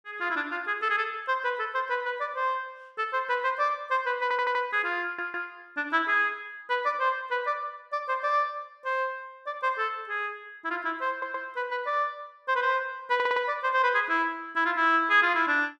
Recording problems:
audio stuttering; 4 times, first at 4 s

